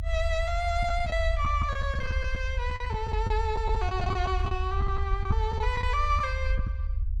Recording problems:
low-frequency rumble; below 76 Hz, SNR 0 dB
packet loss; 9% of the sound replaced, filled with the last packet

